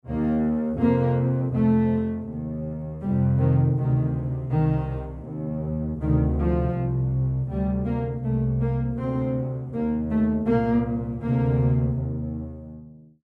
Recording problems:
none

